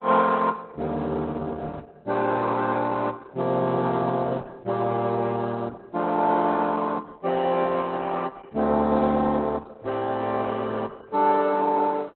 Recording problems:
lossy compression; Opus, log-spectral distance 4 dB, nothing above 4 kHz

